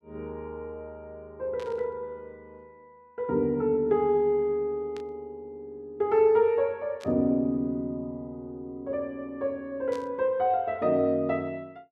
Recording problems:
static burst; 4 times, first at 1.5 s; peak -14 dB vs average level

